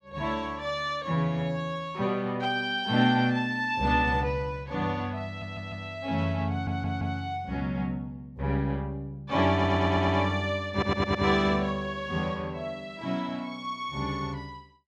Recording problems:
audio stuttering; 4 times, first at 5.5 s

